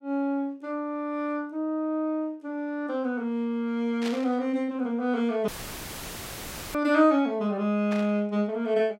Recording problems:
burst of static; at 4 s and at 8 s; peak -5 dB vs average level
dropout; at 5.5 s for 1.5 s; filled with static

